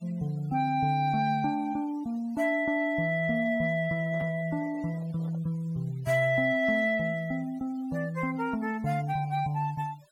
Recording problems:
denoising artefacts; signal-to-artefact ratio 25 dB
microphone handling noise; from 4 to 5.5 s; peak -12 dB vs average level

